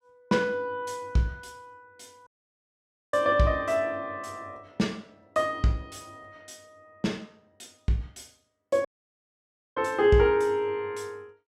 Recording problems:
dropout; at 2.5 s for 1 s and at 9 s for 1 s

